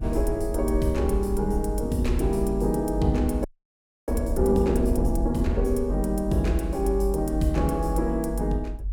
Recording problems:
rumble; below 58 Hz, strongest tone 48 Hz, SNR 5 dB
frozen audio; at 3.5 s for 0.5 s

